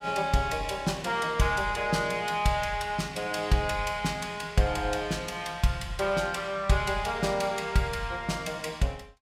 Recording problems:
none

